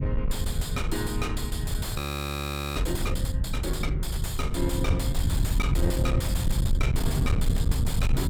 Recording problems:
distortion; soft clipping, signal-to-distortion ratio 6 dB
low-frequency rumble; below 110 Hz, SNR -3 dB
audio freezing; at 2 s for 1 s

